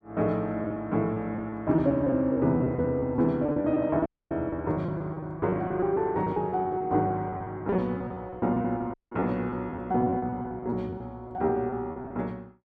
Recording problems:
packet loss; 15% of the sound replaced, filled with repeated pitch periods
audio cutting out; at 4 s and at 9 s

